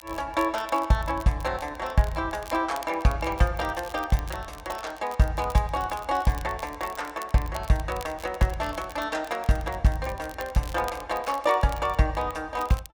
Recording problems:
crackle; vinyl, SNR 19 dB

